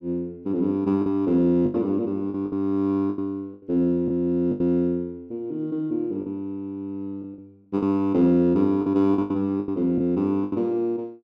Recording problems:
packet loss; 9% of the sound replaced, filled with the last packet

